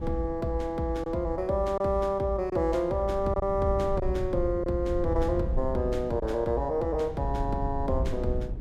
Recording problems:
wind noise; below 96 Hz, SNR 9 dB
packet loss; 1.9% of the sound replaced, filled with silence

